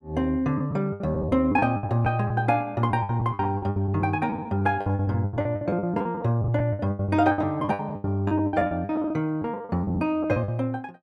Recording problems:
packet loss; 20% of the sound replaced, filled with the last packet

